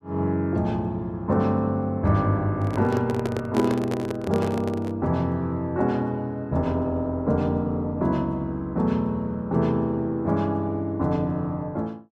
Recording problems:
handling noise; from 2.5 to 5 s; peak +2 dB vs average level

